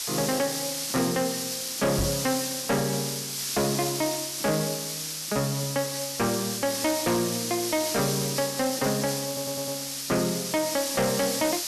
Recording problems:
distorted audio; hard clipping, uneven, signal-to-distortion ratio 11 dB
hiss; SNR 2 dB
knock on the microphone; at 2 s; peak +2 dB vs average level
crackle; at 4 s and from 7.5 to 10 s; loose cable, SNR 28 dB
stutter; at 9.5 s

